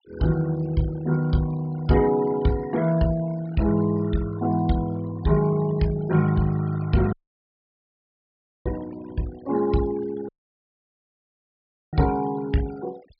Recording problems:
treble cut off; nothing above 5.5 kHz
denoising artefacts; signal-to-artefact ratio 19 dB
dropout; at 7 s for 1.5 s and at 10 s for 1.5 s

